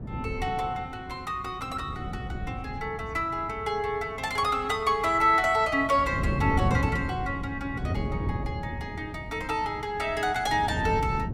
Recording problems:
wind on the microphone; below 220 Hz, SNR 7 dB

